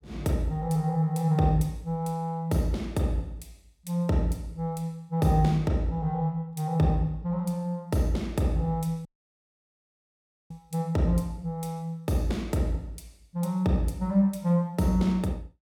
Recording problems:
dropout; at 9 s for 1.5 s

